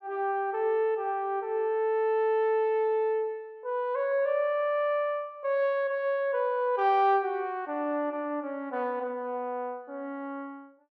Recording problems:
none

